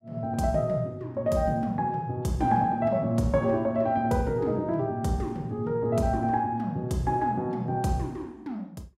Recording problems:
none

